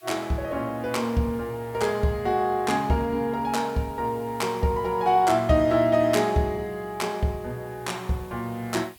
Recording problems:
hiss; SNR 27 dB

